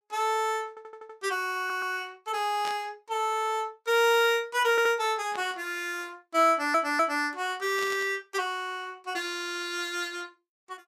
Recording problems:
stutter; 4 times, first at 0.5 s
static burst; at 2.5 s, at 5.5 s and at 8 s; peak -7 dB vs average level

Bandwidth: 14.5 kHz